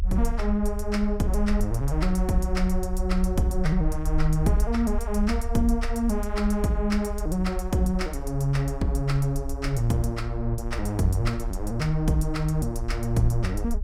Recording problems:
low-frequency rumble; below 60 Hz, SNR 5 dB

